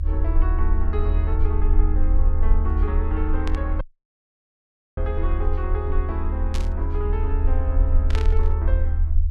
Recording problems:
rumble; below 76 Hz, SNR -9 dB
burst of static; at 3.5 s, at 6.5 s and at 8 s; peak +2 dB vs average level
dropout; at 4 s for 1 s

